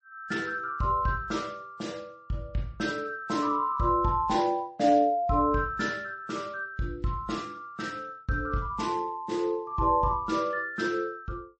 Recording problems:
codec artefacts; MP3, then MP3, log-spectral distance 2 dB, nothing above 7.8 kHz

